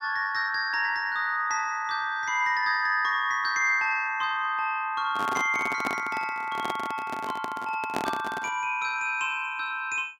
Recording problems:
microphone handling noise; from 5 to 8.5 s; peak +1 dB vs average level

